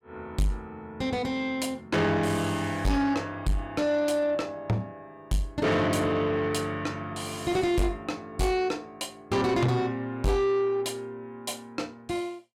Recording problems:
distortion; soft clipping, signal-to-distortion ratio 7 dB

